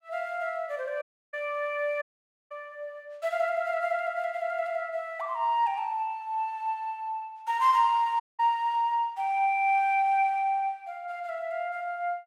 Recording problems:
dropout; at 1 s, at 2 s and at 8 s

